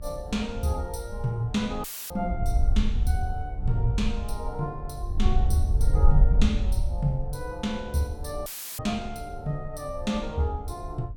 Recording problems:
hum; 50 Hz, harmonics up to 700 Hz, SNR 21 dB
wind on the microphone; below 66 Hz, SNR -2 dB
dropout; at 2 s and at 8.5 s; filled with static

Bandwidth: 17 kHz